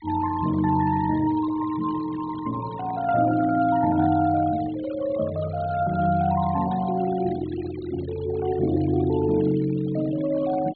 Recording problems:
treble missing; nothing above 4.4 kHz
denoising artefacts; signal-to-artefact ratio 18 dB

